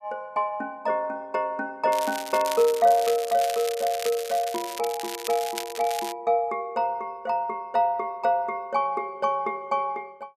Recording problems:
crackle; from 2 to 6 s; loose cable, SNR 10 dB

